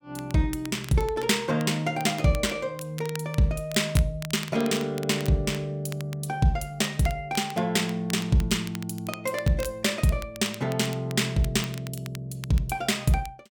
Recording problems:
crackle; vinyl, SNR 17 dB

